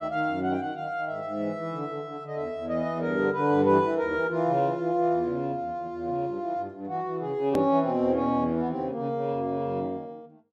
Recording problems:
edit click; at 7.5 s

